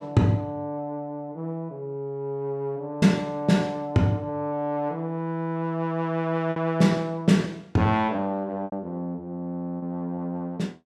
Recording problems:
packet loss; 2% of the sound replaced, filled with repeated pitch periods

